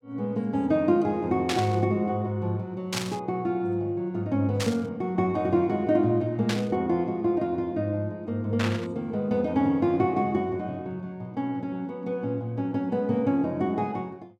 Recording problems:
burst of static; 5 times, first at 1.5 s; peak +2 dB vs average level

